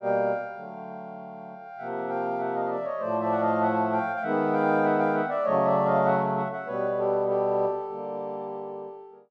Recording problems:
none

